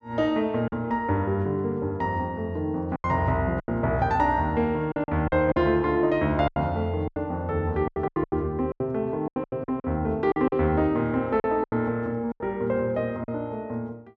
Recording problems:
lost packets; 10% of the sound replaced, filled with silence

